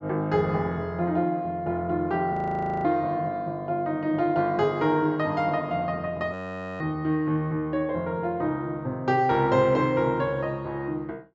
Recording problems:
low-pass filter; nothing above 8 kHz
audio freezing; at 2.5 s for 0.5 s and at 6.5 s

